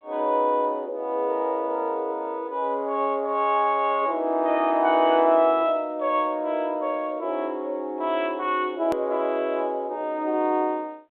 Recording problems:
telephone audio; 300 Hz to 3.7 kHz, G.726
edit click; at 9 s

